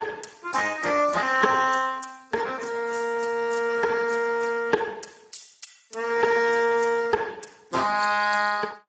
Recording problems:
lossy codec; AAC, then Speex, log-spectral distance 9 dB, nothing above 7.6 kHz

